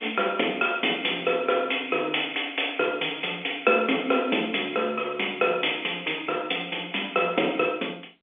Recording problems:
telephone audio; 240 Hz to 3.6 kHz, G.711

